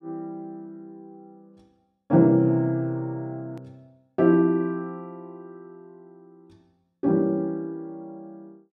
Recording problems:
hard cut with a click; at 3.5 s

